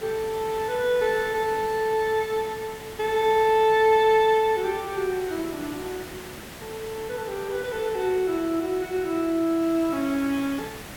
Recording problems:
background hiss; slope -4 dB per octave, SNR 15 dB

